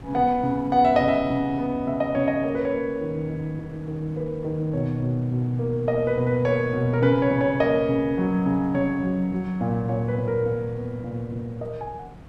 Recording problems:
wind noise; below 340 Hz, SNR 19 dB

